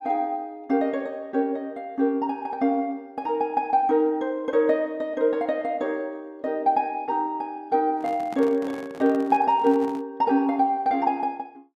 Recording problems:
microphone handling noise; from 8 to 10 s; peak -10 dB vs average level

